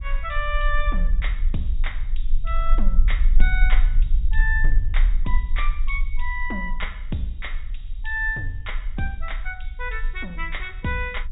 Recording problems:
treble cut off; nothing above 4 kHz
rumble; below 38 Hz, strongest tone 24 Hz, SNR -3 dB

